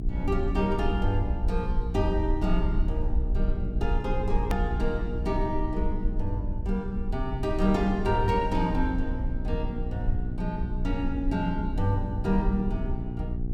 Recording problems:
hum; 60 Hz, harmonics up to 780 Hz, SNR 7 dB
rumble; below 56 Hz, SNR 3 dB
edit click; at 4.5 s

